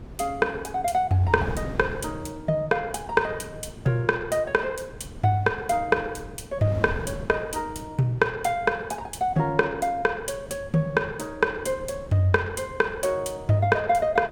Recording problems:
wind on the microphone; below 280 Hz, SNR 15 dB

